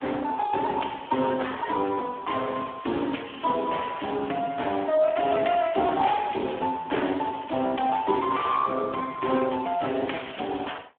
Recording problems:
telephone audio; 220 Hz to 3.3 kHz, Speex

